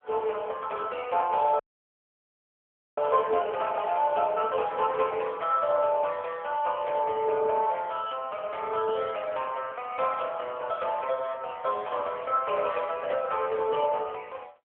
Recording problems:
telephone audio; 370 Hz to 3.4 kHz, AMR-NB
dropout; at 1.5 s for 1.5 s

